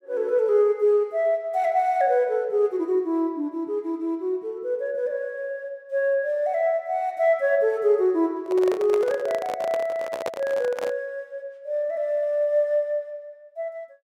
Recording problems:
microphone handling noise; from 8.5 to 11 s; peak -1 dB vs average level

